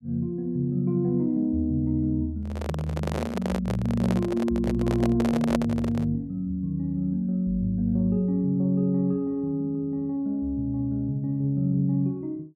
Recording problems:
microphone handling noise; from 2.5 to 6 s; peak +3 dB vs average level

